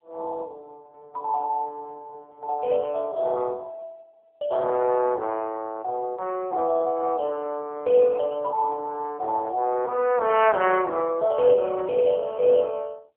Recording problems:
phone line; 320 Hz to 2.5 kHz, AMR-NB

